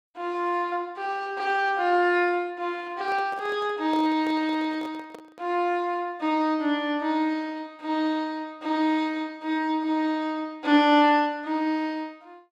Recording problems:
microphone handling noise; from 3 to 5.5 s; peak -9 dB vs average level

